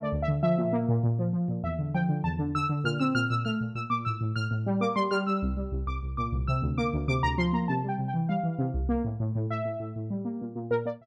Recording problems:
none

